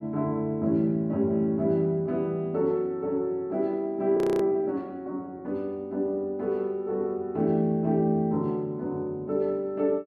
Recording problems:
frozen audio; at 4 s

